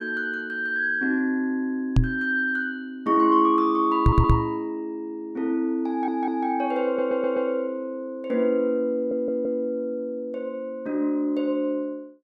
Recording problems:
knock on the microphone; at 2 s and at 4 s; peak +8 dB vs average level
stutter; 4 times, first at 4 s

